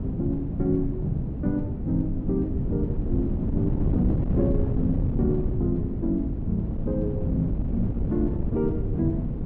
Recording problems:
wind on the microphone; below 200 Hz, SNR 0 dB

